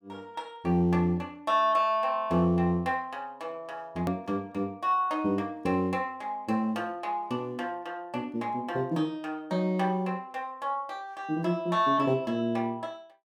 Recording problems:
click at an edit; at 4 s

